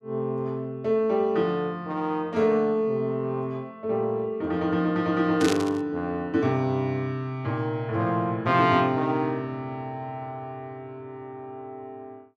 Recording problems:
burst of static; at 5.5 s; peak +1 dB vs average level

